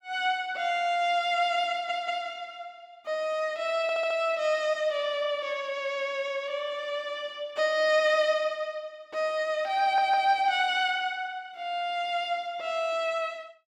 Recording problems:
stutter; at 1.5 s, at 4 s and at 10 s

